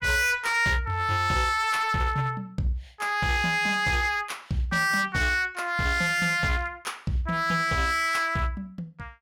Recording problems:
distortion; hard clipping, signal-to-distortion ratio 7 dB

